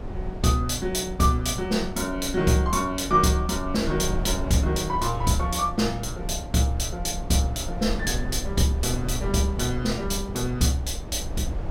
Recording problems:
rumble; below 130 Hz, SNR 9 dB

